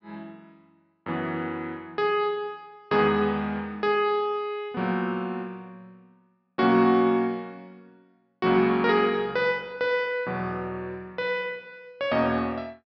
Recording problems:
treble cut off; nothing above 5.5 kHz

